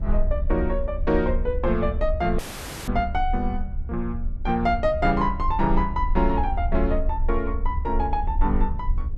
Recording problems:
rumble; below 66 Hz, strongest tone 26 Hz, SNR 4 dB
audio cutting out; at 2.5 s

